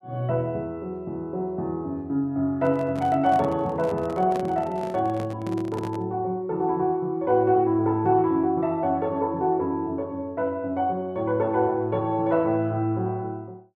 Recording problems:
handling noise; from 2.5 to 6 s; peak -5 dB vs average level

